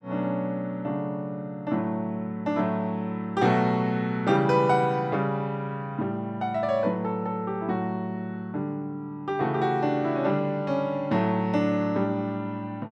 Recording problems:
none

